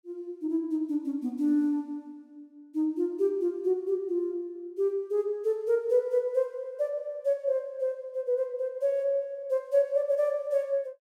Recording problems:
none

